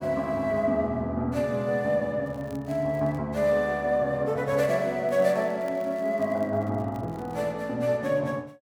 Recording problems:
crackle; at 2.5 s and from 5 to 7.5 s; loose cable, SNR 30 dB

